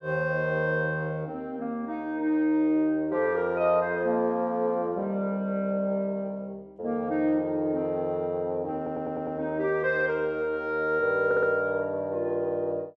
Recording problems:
audio stuttering; at 9 s and at 11 s

